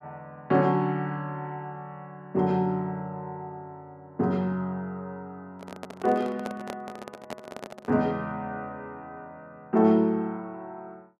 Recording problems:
handling noise; from 5.5 to 8 s; peak -4 dB vs average level

